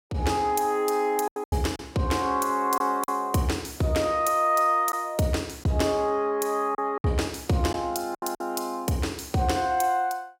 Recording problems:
lost packets; 5% of the sound replaced, filled with silence

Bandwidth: 16 kHz